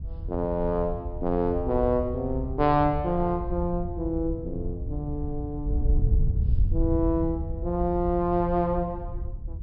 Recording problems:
treble cut off; nothing above 5.5 kHz
wind noise; below 86 Hz, SNR 4 dB

